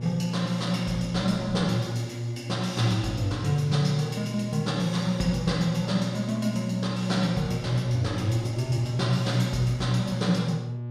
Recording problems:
hum; 60 Hz, harmonics up to 840 Hz, SNR 8 dB
wind on the microphone; below 450 Hz, SNR 23 dB

